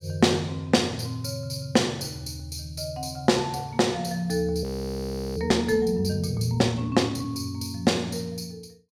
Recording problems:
frozen audio; at 4.5 s for 0.5 s

